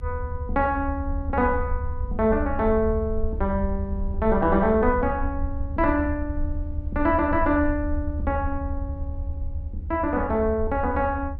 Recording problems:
rumble; below 80 Hz, SNR 6 dB

